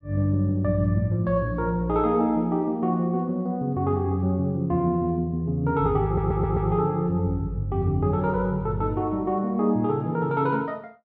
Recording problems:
stutter; at 6 s

